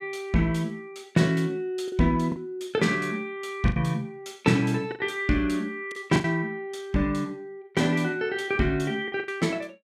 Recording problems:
packet loss; 5% of the sound replaced, filled with the last packet

